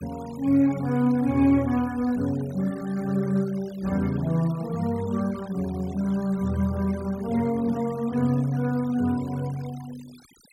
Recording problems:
noise reduction artefacts; signal-to-artefact ratio 22 dB

